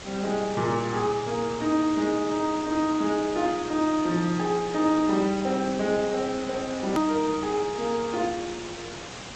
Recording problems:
codec artefacts; AAC, then G.722, log-spectral distance 11 dB, nothing above 13.1 kHz
hiss; slope -3 dB per octave, SNR 12 dB
edit click; at 7 s

